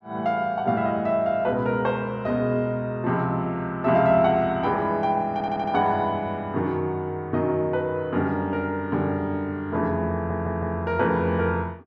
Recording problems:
audio stuttering; at 5.5 s and at 10 s

